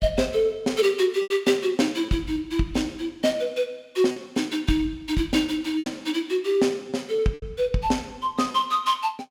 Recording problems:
lost packets; 4% of the sound replaced, filled with repeated pitch periods

